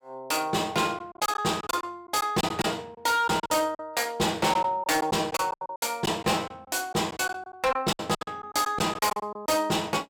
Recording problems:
distortion; hard clipping, signal-to-distortion ratio 11 dB
lost packets; 12% of the sound replaced, filled with silence

